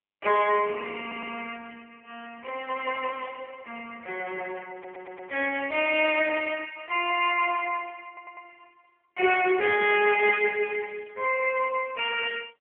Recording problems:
telephone audio; 320 Hz to 3.3 kHz, AMR-NB
stutter; at 1 s, at 4.5 s and at 8 s

